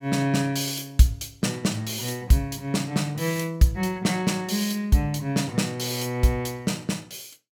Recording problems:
none

